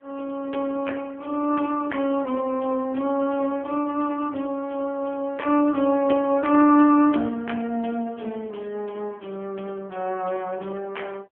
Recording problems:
telephone audio; 220 Hz to 3.2 kHz, AMR-NB

